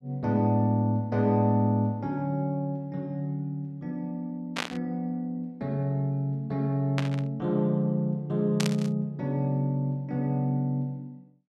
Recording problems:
burst of static; at 4.5 s, at 7 s and at 8.5 s; peak +2 dB vs average level

